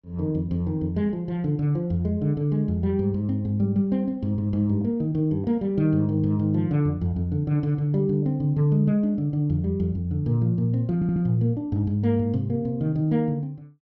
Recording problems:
stutter; at 11 s

